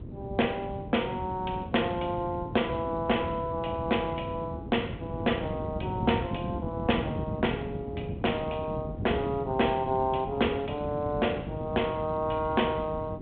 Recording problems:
telephone audio; 260 Hz to 3.4 kHz, G.726
wind noise; below 270 Hz, SNR 7 dB

